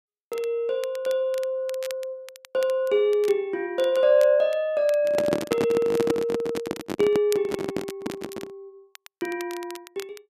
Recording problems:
crackling; vinyl, SNR 20 dB
microphone handling noise; from 5 to 8.5 s; peak +3 dB vs average level

